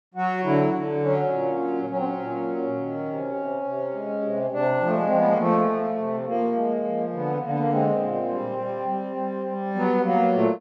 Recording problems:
none

